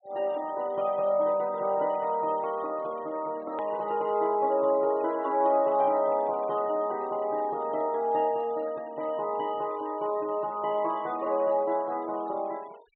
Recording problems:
treble missing; nothing above 4 kHz
noise reduction artefacts; signal-to-artefact ratio 27 dB
click at an edit; at 3.5 s

